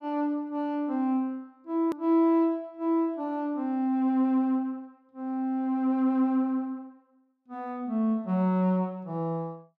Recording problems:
click at an edit; at 2 s

